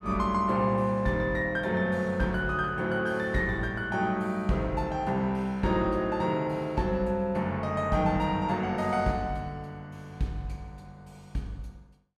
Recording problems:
none

